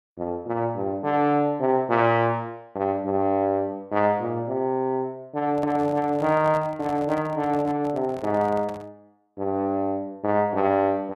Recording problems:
microphone handling noise; from 5.5 to 9 s; peak -10 dB vs average level

